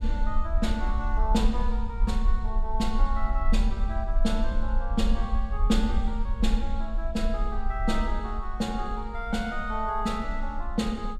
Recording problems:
rumble; below 46 Hz, strongest tone 24 Hz, SNR 0 dB

